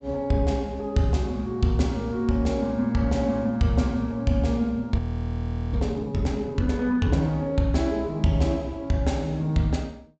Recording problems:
treble cut off; nothing above 8 kHz
audio freezing; at 5 s for 1 s

